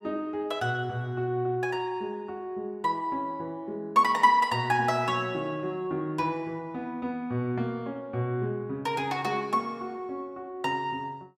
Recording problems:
none

